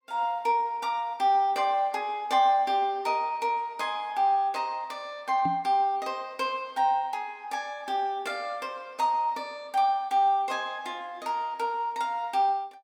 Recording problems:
microphone thump; at 5.5 s; peak -3 dB vs average level

